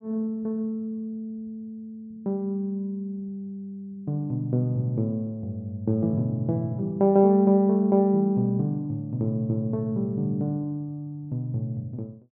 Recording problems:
none

